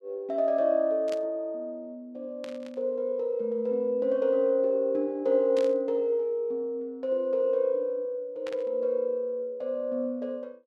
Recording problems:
burst of static; 4 times, first at 1 s; peak -10 dB vs average level

